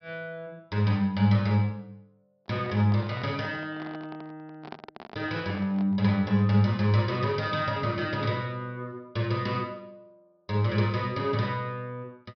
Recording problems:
low-pass filter; nothing above 5.5 kHz
microphone handling noise; from 2.5 to 6 s; peak -9 dB vs average level

